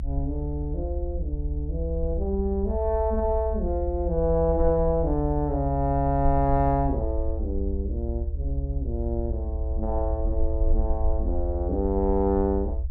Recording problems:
low-frequency rumble; below 70 Hz, SNR 3 dB

